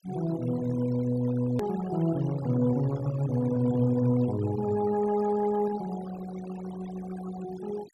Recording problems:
noise reduction artefacts; signal-to-artefact ratio 16 dB
click at an edit; at 1.5 s

